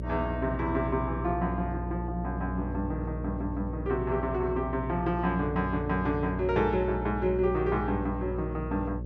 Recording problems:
hum; 60 Hz, harmonics up to 600 Hz, SNR 6 dB

